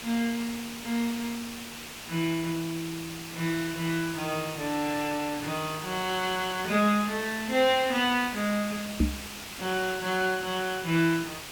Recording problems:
background hiss; SNR 9 dB
microphone bump; at 9 s; peak +7 dB vs average level

